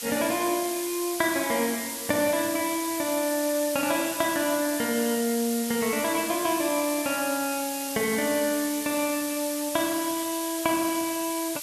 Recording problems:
hiss; slope +2 dB per octave, SNR 5 dB

